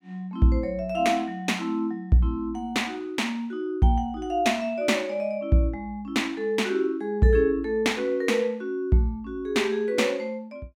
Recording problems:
none

